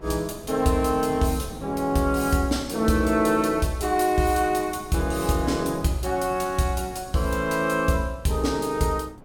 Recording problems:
wind noise; below 390 Hz, SNR 19 dB

